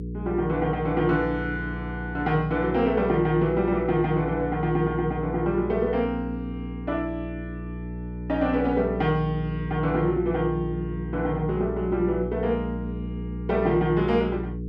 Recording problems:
electrical hum; 60 Hz, harmonics up to 480 Hz, SNR 8 dB

